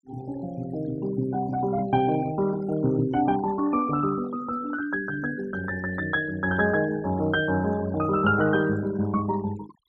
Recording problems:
denoising artefacts; signal-to-artefact ratio 18 dB

